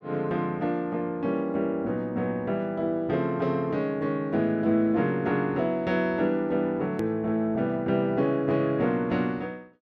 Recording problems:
hard cut with a click; at 7 s

